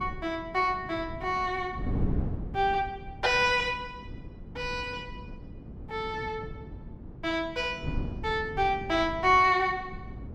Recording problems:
wind on the microphone; below 210 Hz, SNR 11 dB

